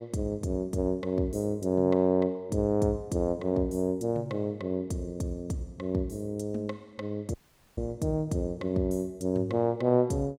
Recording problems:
audio cutting out; at 7.5 s

